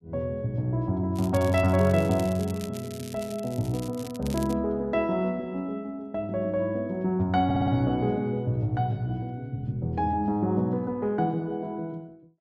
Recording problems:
crackling; from 1 to 2.5 s and from 2.5 to 4.5 s; loose cable, SNR 17 dB
audio stuttering; at 7.5 s

